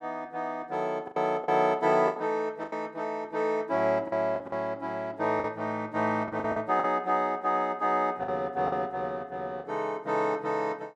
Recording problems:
packet loss; 7% of the sound replaced, filled with the last packet

